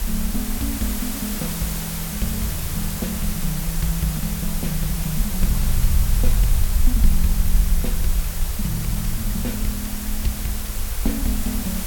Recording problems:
hiss; slope -2 dB per octave, SNR 1 dB
low-frequency rumble; below 54 Hz, SNR -1 dB

